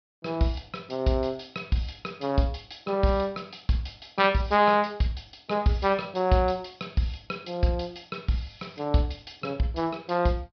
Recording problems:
low-pass filter; nothing above 5.5 kHz

